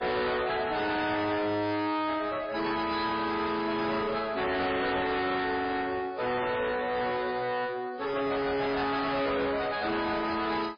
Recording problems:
lossy codec; MP3, log-spectral distance 5 dB, nothing above 5 kHz
distorted audio; soft clipping, signal-to-distortion ratio 5 dB

